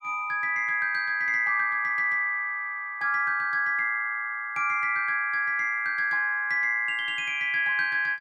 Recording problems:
none

